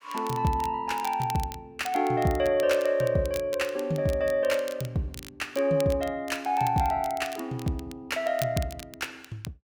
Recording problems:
crackle; vinyl, SNR 17 dB

